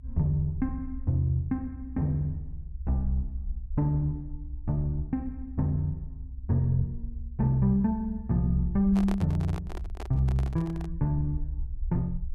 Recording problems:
rumble; below 66 Hz, SNR 11 dB
handling noise; from 9 to 11 s; peak -4 dB vs average level

